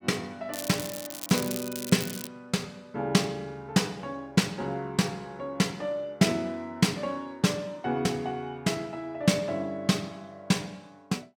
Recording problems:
crackling; from 0.5 to 2.5 s; loose cable, SNR 8 dB

